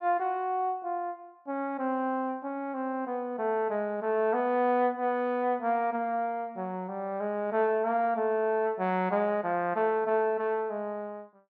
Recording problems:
none

